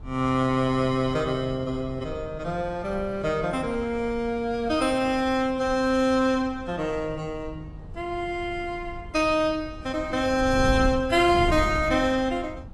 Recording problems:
lossy codec; AAC, log-spectral distance 2 dB, nothing above 11 kHz
wind noise; below 130 Hz, SNR 13 dB

